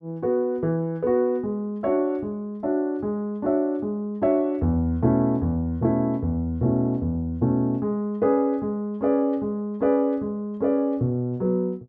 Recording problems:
none

